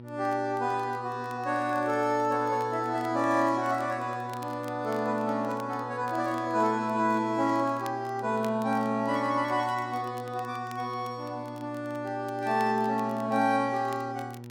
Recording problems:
hum; 60 Hz, harmonics up to 960 Hz, SNR 15 dB
crackle; vinyl, SNR 26 dB

